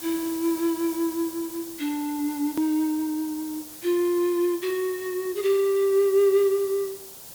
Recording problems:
hiss; SNR 14 dB
hard cut with a click; at 2.5 s

